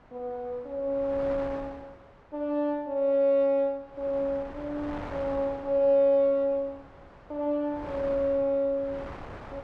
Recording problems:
wind noise; below 1.1 kHz, SNR 17 dB

